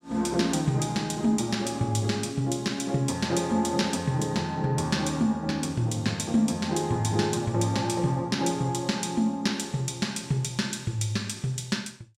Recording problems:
none

